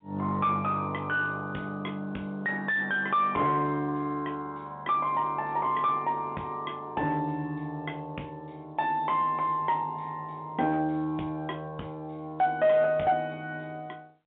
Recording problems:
telephone audio; 220 Hz to 3.8 kHz, G.711
distorted audio; soft clipping, signal-to-distortion ratio 10 dB

